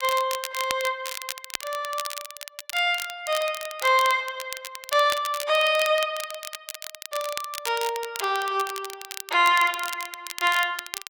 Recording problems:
crackling; vinyl, SNR 10 dB

